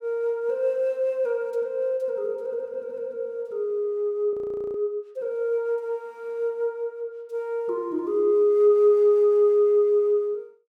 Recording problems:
audio freezing; at 4.5 s

